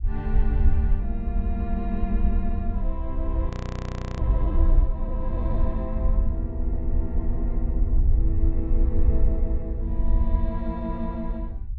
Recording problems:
treble cut off; nothing above 8 kHz
low-frequency rumble; below 62 Hz, SNR -7 dB
frozen audio; at 3.5 s for 0.5 s

